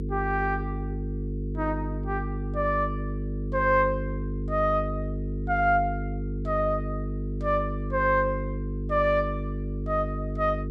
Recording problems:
hum; 50 Hz, harmonics up to 450 Hz, SNR 5 dB

